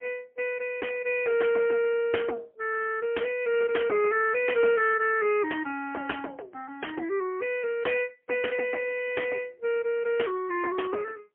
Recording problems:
phone line; 300 Hz to 3.1 kHz, AMR-NB, then MP3

